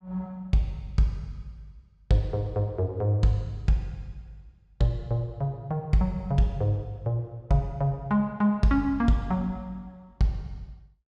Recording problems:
none

